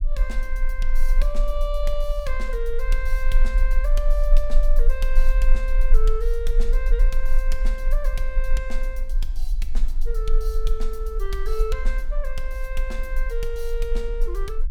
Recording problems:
rumble; below 32 Hz, strongest tone 20 Hz, SNR -7 dB

